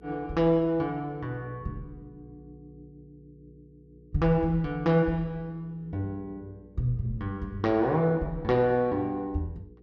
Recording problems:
hum; 60 Hz, harmonics up to 480 Hz, SNR 24 dB

